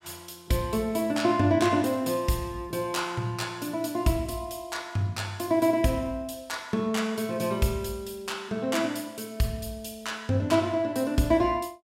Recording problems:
none

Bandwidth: 16 kHz